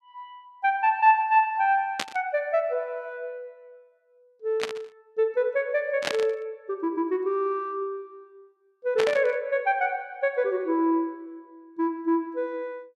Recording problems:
burst of static; 4 times, first at 2 s; peak +2 dB vs average level

